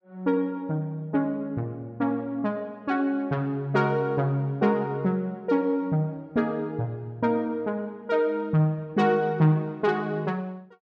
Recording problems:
none

